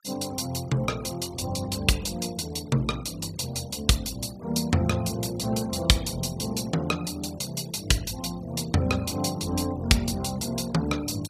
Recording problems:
noise reduction artefacts; signal-to-artefact ratio 19 dB

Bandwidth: 15 kHz